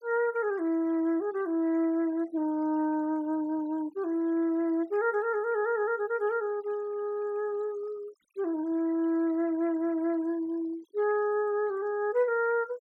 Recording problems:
denoising artefacts; signal-to-artefact ratio 27 dB

